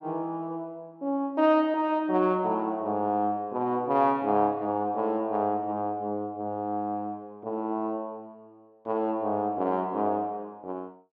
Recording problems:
none

